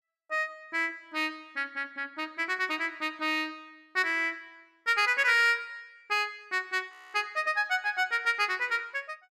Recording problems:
audio freezing; at 7 s

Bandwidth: 14.5 kHz